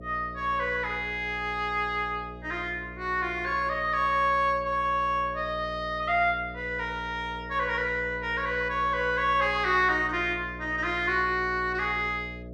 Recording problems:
hum; 60 Hz, harmonics up to 660 Hz, SNR 15 dB

